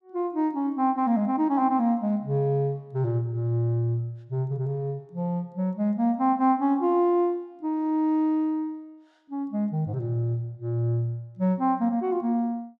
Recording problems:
none

